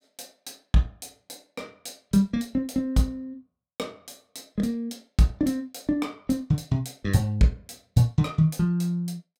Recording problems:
none

